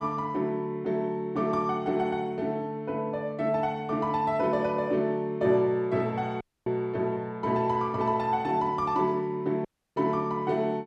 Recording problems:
audio cutting out; at 6.5 s and at 9.5 s

